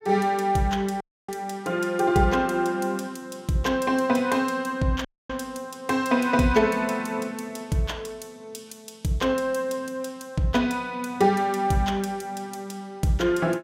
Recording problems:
audio cutting out; at 1 s and at 5 s

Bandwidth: 16 kHz